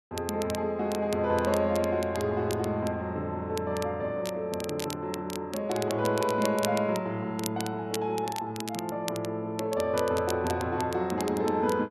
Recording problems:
crackling; vinyl, SNR 13 dB

